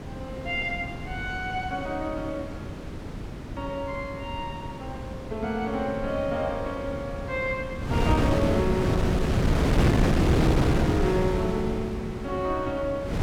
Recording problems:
wind noise; below 360 Hz, SNR -1 dB

